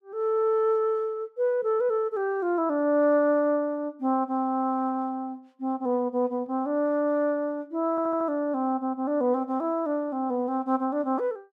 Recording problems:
stutter; at 8 s

